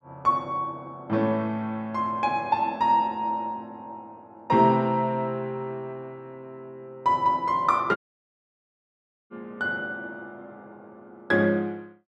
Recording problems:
audio cutting out; at 8 s for 1.5 s

